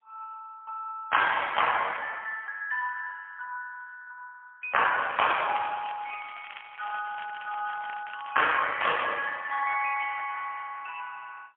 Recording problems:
telephone audio; 280 Hz to 3.3 kHz, AMR-NB, then MP3
crackle; from 5 to 8.5 s; loose cable, SNR 17 dB

